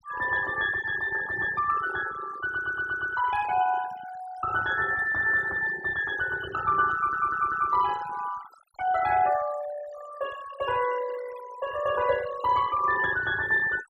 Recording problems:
denoising artefacts; signal-to-artefact ratio 14 dB
audio stuttering; at 2.5 s and at 7 s

